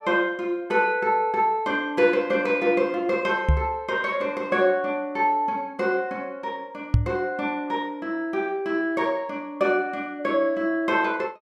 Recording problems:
knock on the microphone; at 3.5 s and at 7 s; peak +8 dB vs average level

